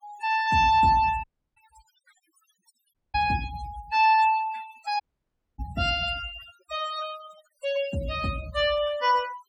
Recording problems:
denoising artefacts; signal-to-artefact ratio 17 dB
audio cutting out; at 1 s, at 3 s and at 5 s for 0.5 s

